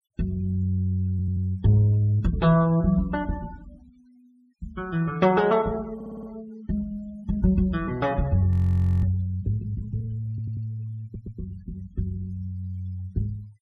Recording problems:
noise reduction artefacts; signal-to-artefact ratio 27 dB
stutter; 4 times, first at 1 s
frozen audio; at 8.5 s for 0.5 s

